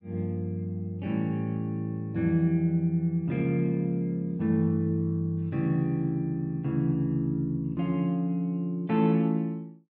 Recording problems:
none

